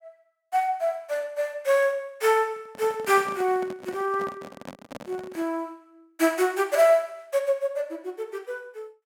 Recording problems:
handling noise; from 2.5 to 5.5 s; peak -8 dB vs average level

